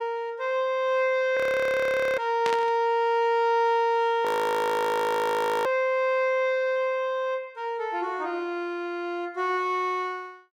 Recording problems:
audio freezing; at 1.5 s for 1 s and at 4.5 s for 1.5 s
burst of static; at 2.5 s; peak -2 dB vs average level

